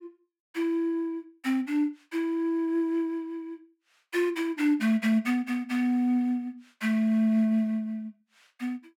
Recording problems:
none

